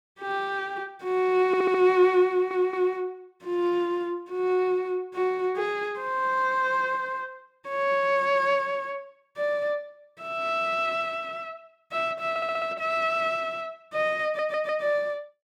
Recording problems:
audio stuttering; 4 times, first at 1.5 s

